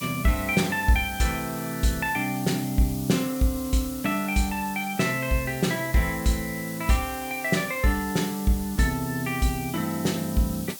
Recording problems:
background hiss; SNR 12 dB

